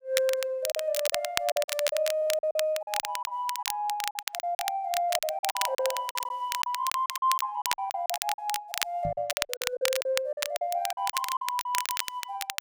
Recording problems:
crackling; vinyl, SNR 3 dB
packet loss; 15% of the sound replaced, filled with silence
stutter; at 2 s, at 6 s and at 8.5 s
microphone bump; at 9 s; peak -2 dB vs average level

